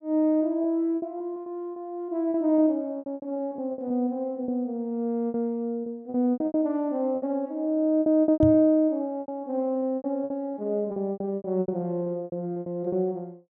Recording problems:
packet loss; 14% of the sound replaced, filled with repeated pitch periods
microphone bump; at 8.5 s; peak +3 dB vs average level

